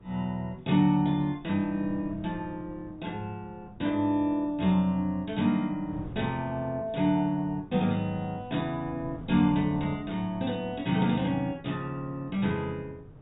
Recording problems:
treble missing; nothing above 4 kHz
wind noise; below 250 Hz, SNR 19 dB

